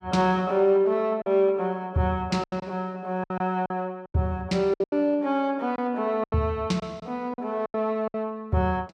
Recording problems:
lost packets; 9% of the sound replaced, filled with silence

